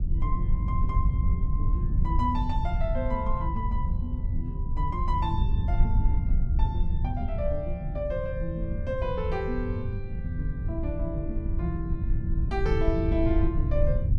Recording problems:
rumble; below 80 Hz, SNR -3 dB

